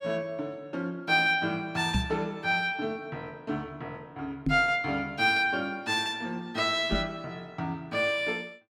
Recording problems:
microphone thump; at 2 s, at 4.5 s and at 7 s; peak +4 dB vs average level

